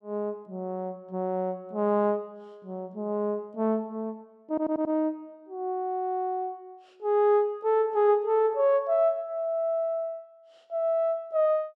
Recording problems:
audio stuttering; at 4.5 s

